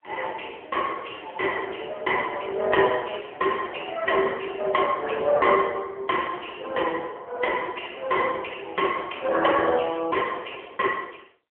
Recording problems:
phone line; 300 Hz to 3.1 kHz, AMR-NB

